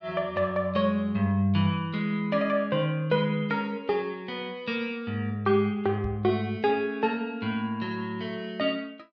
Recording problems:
microphone thump; at 6 s; peak -3 dB vs average level

